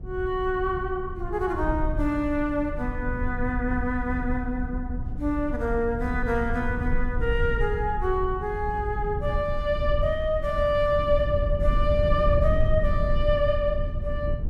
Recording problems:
low-frequency rumble; below 84 Hz, SNR 4 dB

